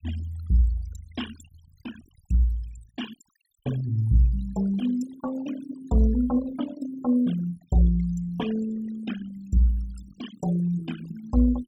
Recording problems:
noise reduction artefacts; signal-to-artefact ratio 16 dB

